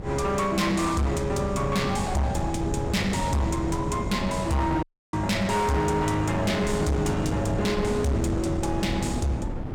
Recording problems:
distortion; hard clipping, uneven, signal-to-distortion ratio 6 dB
wind noise; below 310 Hz, SNR 6 dB
dropout; at 5 s

